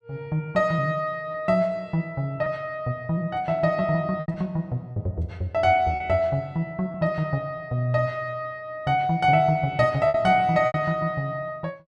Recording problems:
lost packets; 3% of the sound replaced, filled with repeated pitch periods

